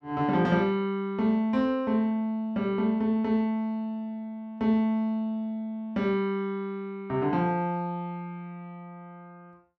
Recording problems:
none

